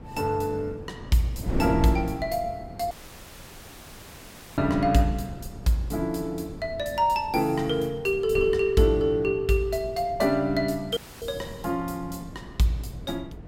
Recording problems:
wind noise; below 280 Hz, SNR 12 dB
dropout; at 3 s for 1.5 s and at 11 s

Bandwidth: 16.5 kHz